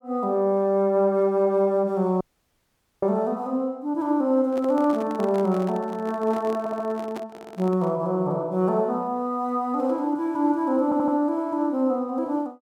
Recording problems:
audio cutting out; at 2 s for 1 s
handling noise; from 4.5 to 8 s; peak -9 dB vs average level
stutter; at 6.5 s, at 7.5 s and at 11 s

